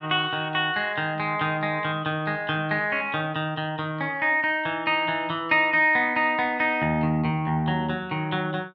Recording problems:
none

